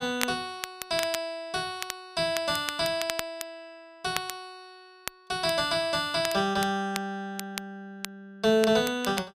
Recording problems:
crackling; vinyl, SNR 9 dB

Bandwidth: 14.5 kHz